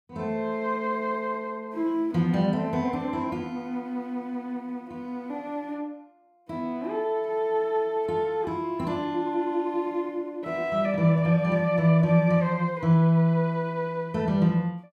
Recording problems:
none

